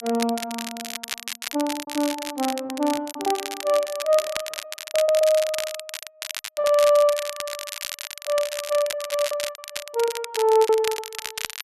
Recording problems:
crackle; vinyl, SNR 9 dB
lost packets; 12% of the sound replaced, filled with repeated pitch periods

